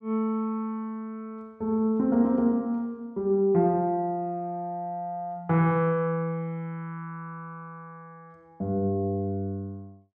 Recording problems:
none

